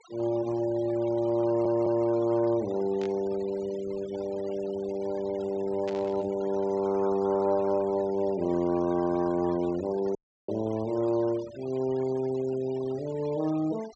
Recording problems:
treble cut off; nothing above 8 kHz
denoising artefacts; signal-to-artefact ratio 19 dB
stutter; at 1.5 s
static burst; at 3 s and at 6 s; peak -10 dB vs average level
dropout; at 10 s

